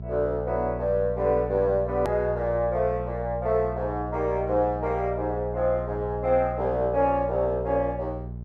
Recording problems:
electrical hum; 60 Hz, harmonics up to 420 Hz, SNR 10 dB
click at an edit; at 2 s

